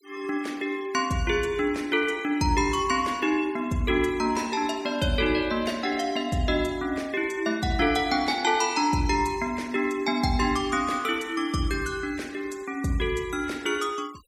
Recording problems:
denoising artefacts; signal-to-artefact ratio 23 dB

